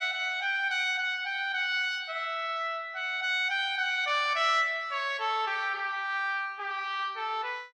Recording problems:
none

